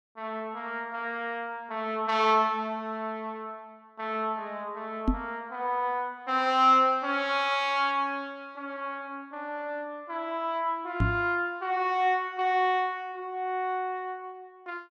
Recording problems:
microphone bump; at 5 s and at 11 s; peak +7 dB vs average level

